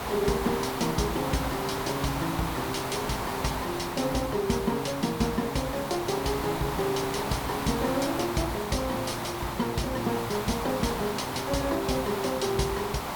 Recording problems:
background hiss; SNR 3 dB

